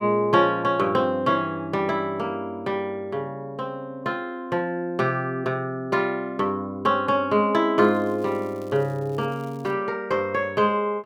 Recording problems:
crackling; from 8 to 9.5 s; loose cable, SNR 30 dB

